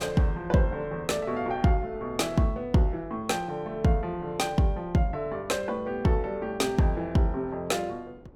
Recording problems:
wind noise; below 410 Hz, SNR 21 dB

